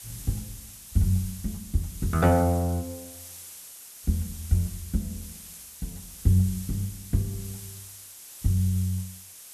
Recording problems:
background hiss; slope +2 dB per octave, SNR 14 dB

